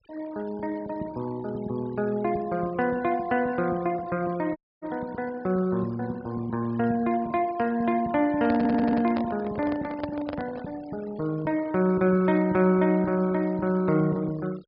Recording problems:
treble missing; nothing above 5.5 kHz
noise reduction artefacts; signal-to-artefact ratio 22 dB
dropout; at 4.5 s
microphone handling noise; from 8.5 to 11 s; peak -3 dB vs average level
audio stuttering; at 8.5 s

